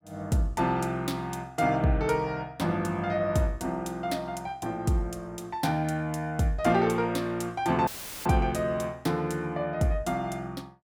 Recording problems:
audio cutting out; at 8 s; filled with static

